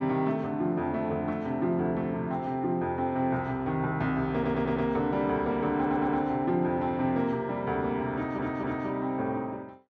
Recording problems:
audio stuttering; at 4.5 s, at 6 s and at 8 s

